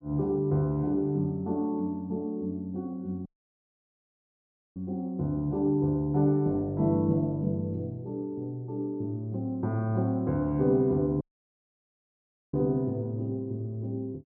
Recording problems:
dropout; at 3.5 s for 1.5 s and at 11 s for 1.5 s

